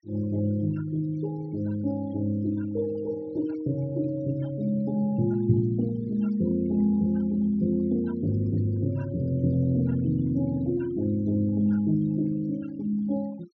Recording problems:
low-pass filter; nothing above 6.2 kHz
denoising artefacts; signal-to-artefact ratio 24 dB

